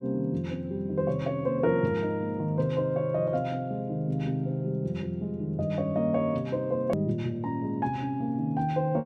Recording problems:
edit click; at 7 s

